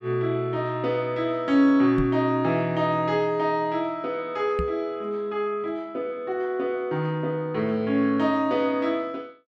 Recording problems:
microphone bump; at 2 s and at 4.5 s; peak 0 dB vs average level

